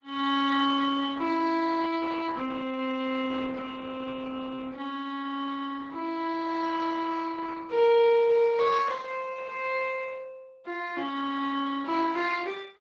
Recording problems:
lossy compression; Speex, then Opus, log-spectral distance 4 dB

